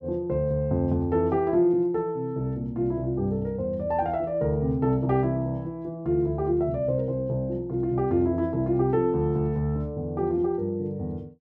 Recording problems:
none

